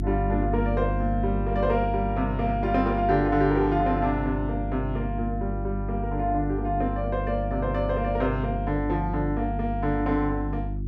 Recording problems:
electrical hum; 50 Hz, harmonics up to 350 Hz, SNR 4 dB

